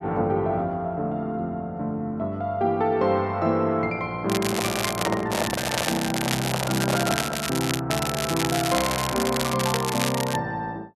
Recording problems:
crackle; at 4.5 s, from 5.5 to 8 s and from 8 to 10 s; loose cable, SNR 3 dB
handling noise; from 4.5 to 7.5 s; peak +3 dB vs average level

